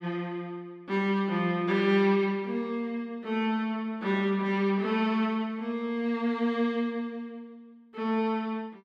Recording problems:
none

